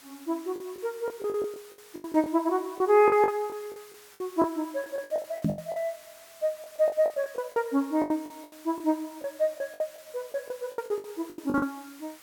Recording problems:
background hiss; slope 0 dB per octave, SNR 21 dB
lost packets; 16% of the sound replaced, filled with the last packet
knock on the microphone; at 5.5 s; peak +5 dB vs average level

